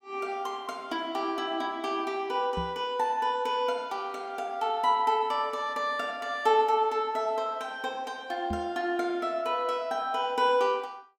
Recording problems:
microphone thump; at 2.5 s and at 8.5 s; peak -2 dB vs average level

